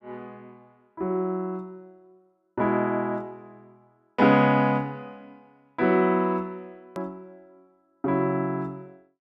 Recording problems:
edit click; at 7 s

